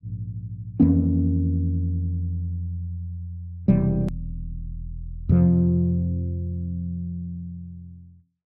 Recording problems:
edit click; at 4 s

